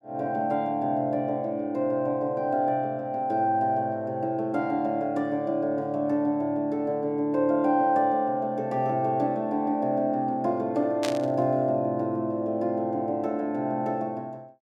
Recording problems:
static burst; at 11 s; peak -1 dB vs average level

